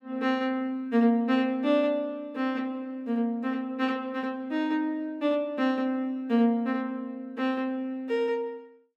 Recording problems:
none

